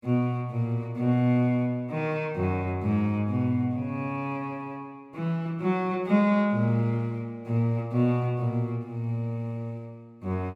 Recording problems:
none

